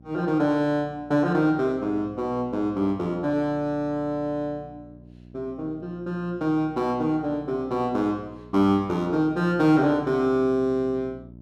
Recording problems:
hum; 60 Hz, harmonics up to 660 Hz, SNR 22 dB

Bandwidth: 14 kHz